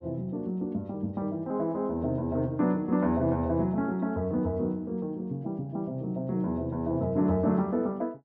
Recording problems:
none

